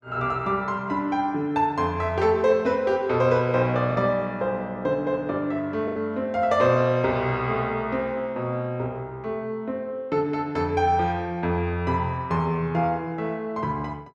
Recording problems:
lost packets; 0.9% of the sound replaced, filled with the last packet

